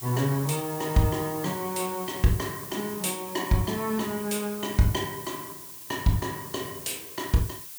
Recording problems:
background hiss; slope +2 dB per octave, SNR 10 dB

